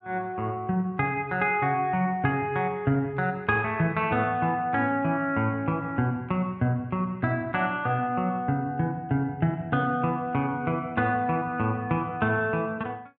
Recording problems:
none

